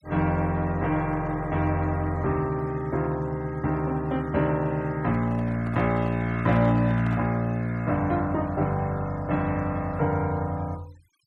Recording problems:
noise reduction artefacts; signal-to-artefact ratio 26 dB
handling noise; from 5 to 7.5 s; peak -10 dB vs average level

